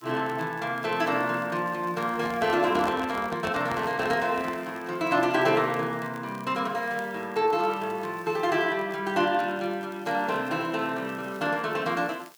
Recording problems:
background hiss; slope +2 dB per octave, SNR 29 dB
crackling; vinyl, SNR 28 dB
microphone handling noise; from 2 to 4.5 s; peak -3 dB vs average level

